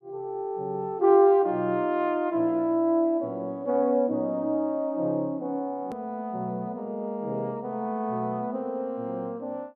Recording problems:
click at an edit; at 6 s

